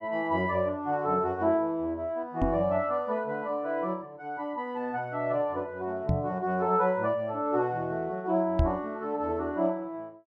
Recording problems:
microphone thump; at 2.5 s, at 6 s and at 8.5 s; peak +7 dB vs average level

